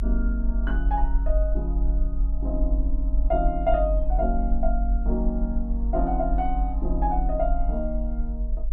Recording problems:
rumble; below 48 Hz, strongest tone 46 Hz, SNR -2 dB

